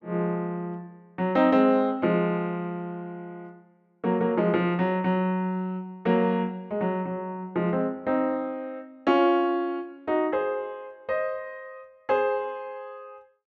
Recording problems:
none

